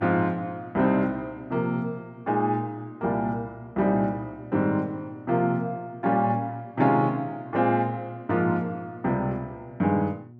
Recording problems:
hum; 60 Hz, harmonics up to 720 Hz, SNR 21 dB

